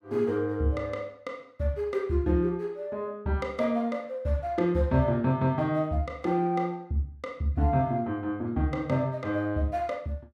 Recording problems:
none

